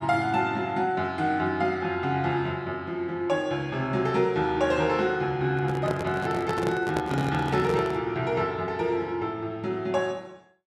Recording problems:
handling noise; from 5.5 to 8 s; peak +1 dB vs average level

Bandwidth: 12.5 kHz